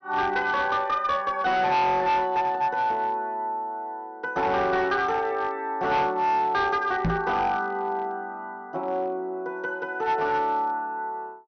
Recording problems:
treble missing; nothing above 6.2 kHz
distortion; hard clipping, uneven, signal-to-distortion ratio 11 dB
microphone bump; at 7 s; peak +3 dB vs average level

